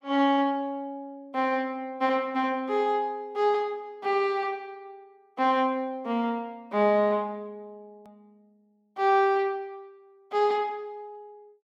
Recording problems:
click at an edit; at 8 s

